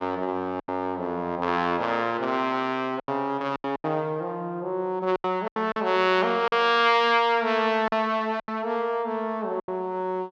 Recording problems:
lost packets; 7% of the sound replaced, filled with silence

